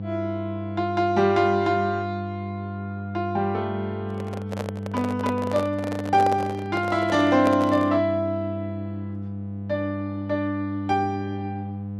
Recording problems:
hum; 50 Hz, harmonics up to 700 Hz, SNR 8 dB
handling noise; from 4 to 8 s; peak -1 dB vs average level

